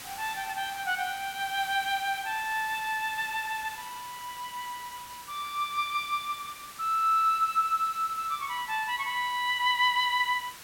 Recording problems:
background hiss; slope 0 dB per octave, SNR 15 dB

